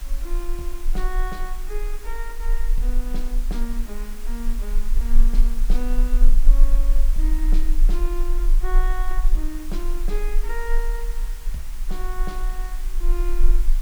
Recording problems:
background hiss; slope -1 dB per octave, SNR 8 dB
low-frequency rumble; below 34 Hz, strongest tone 18 Hz, SNR -10 dB

